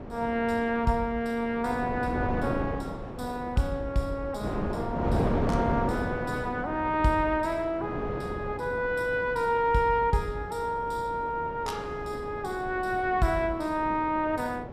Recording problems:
wind on the microphone; below 550 Hz, SNR 7 dB

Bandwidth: 15 kHz